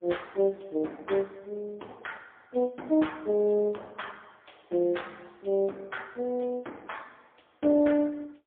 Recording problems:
telephone audio; 220 Hz to 3.5 kHz, AMR-NB, then MP3

